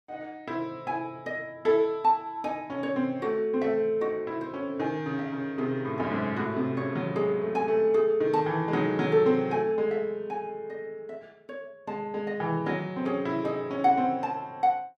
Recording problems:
none

